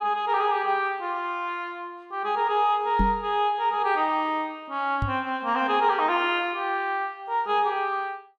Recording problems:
microphone bump; at 3 s and at 5 s; peak +3 dB vs average level

